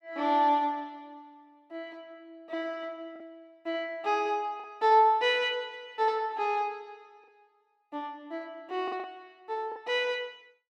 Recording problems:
packet loss; 2% of the sound replaced, filled with the last packet

